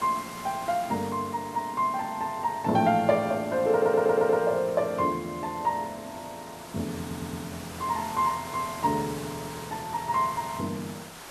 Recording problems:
hiss; SNR 15 dB
audio stuttering; at 3.5 s and at 7 s

